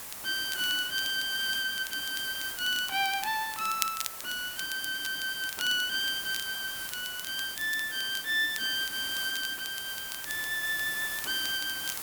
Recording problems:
background hiss; slope -1 dB per octave, SNR 7 dB
crackle; vinyl, SNR 12 dB

